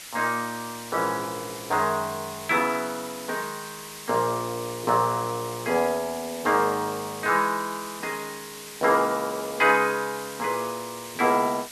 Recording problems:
hiss; slope +2 dB per octave, SNR 13 dB

